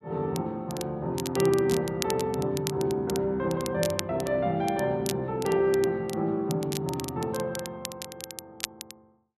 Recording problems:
crackle; vinyl, SNR 11 dB

